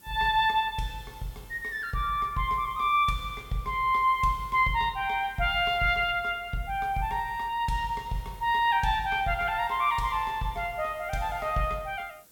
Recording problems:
background hiss; SNR 27 dB

